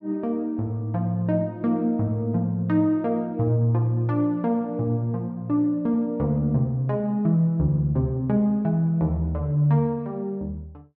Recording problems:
treble cut off; nothing above 8 kHz

